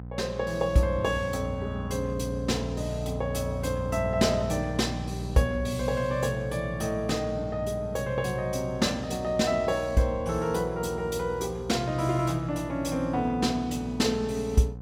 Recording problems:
hum; 60 Hz, harmonics up to 780 Hz, SNR 9 dB

